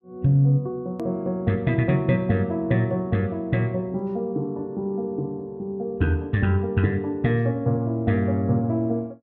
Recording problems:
edit click; at 1 s

